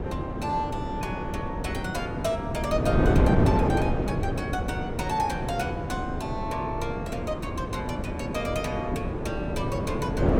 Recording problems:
wind on the microphone; below 410 Hz, SNR -3 dB

